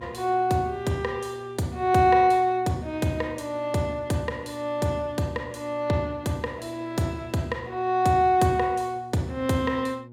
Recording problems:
hum; 60 Hz, harmonics up to 840 Hz, SNR 20 dB

